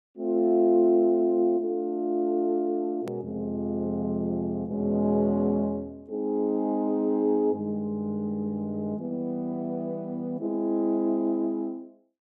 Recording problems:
click at an edit; at 3 s

